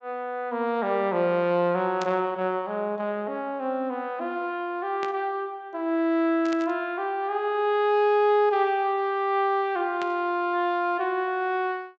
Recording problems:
treble cut off; nothing above 8 kHz
burst of static; 4 times, first at 2 s; peak -7 dB vs average level

